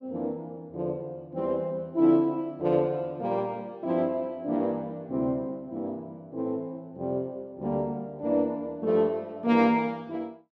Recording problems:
none

